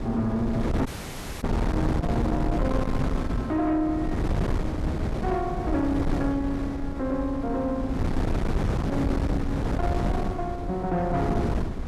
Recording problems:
distortion; soft clipping, signal-to-distortion ratio 12 dB
wind noise; below 310 Hz, SNR 0 dB
dropout; at 1 s for 0.5 s

